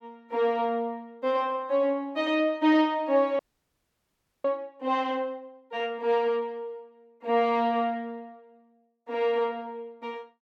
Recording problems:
audio freezing; at 3.5 s for 1 s

